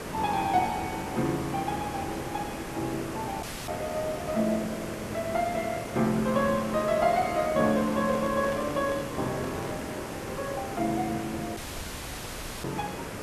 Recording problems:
hiss; slope -6 dB per octave, SNR 7 dB
audio cutting out; at 3.5 s and at 12 s for 1 s
handling noise; from 8 to 10 s; peak -5 dB vs average level

